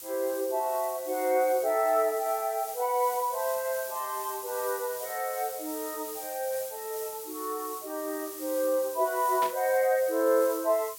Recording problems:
hiss; SNR 10 dB
static burst; at 9.5 s; peak -5 dB vs average level

